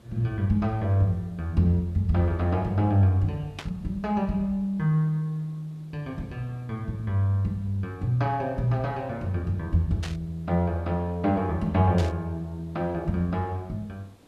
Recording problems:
hiss; slope -6 dB per octave, SNR 29 dB
static burst; at 3.5 s, at 10 s and at 12 s; peak -5 dB vs average level

